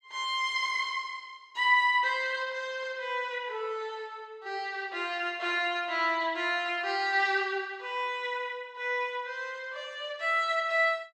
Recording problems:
none

